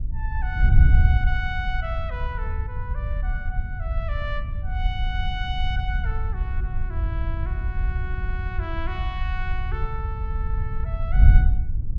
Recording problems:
wind noise; below 76 Hz, SNR -9 dB

